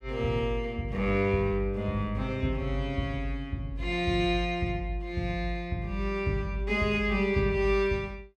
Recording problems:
none

